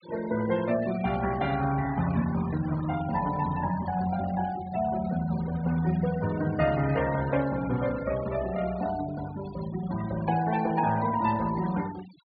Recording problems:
treble cut off; nothing above 4.8 kHz
denoising artefacts; signal-to-artefact ratio 15 dB

